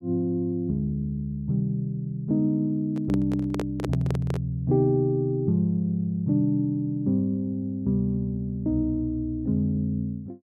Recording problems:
handling noise; from 3 to 4.5 s; peak -1 dB vs average level

